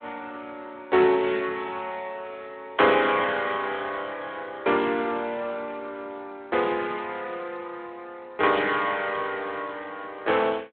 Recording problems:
telephone audio; 280 Hz to 3.7 kHz, Speex

